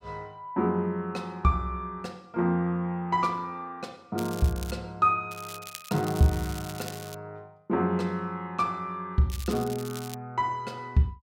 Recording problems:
crackling; at 4 s, from 5.5 to 7 s and at 9.5 s; loose cable, SNR 14 dB

